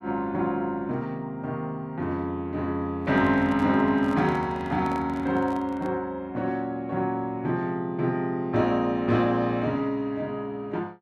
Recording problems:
microphone handling noise; from 3 to 6 s; peak -9 dB vs average level

